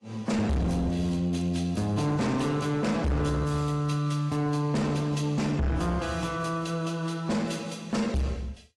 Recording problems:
lossy codec; AAC, log-spectral distance 2 dB
distorted audio; soft clipping, signal-to-distortion ratio 8 dB

